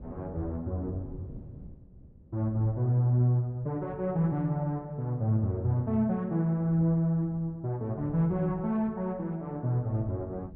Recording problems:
wind on the microphone; below 170 Hz, SNR 20 dB

